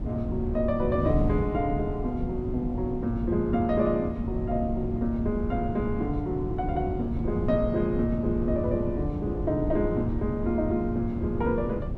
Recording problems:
wind on the microphone; below 190 Hz, SNR 4 dB

